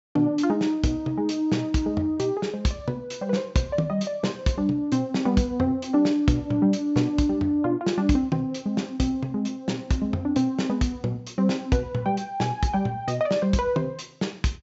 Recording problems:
low-pass filter; nothing above 8 kHz

